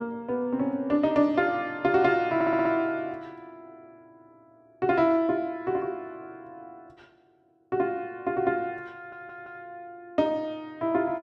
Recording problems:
audio stuttering; at 2.5 s and at 9 s

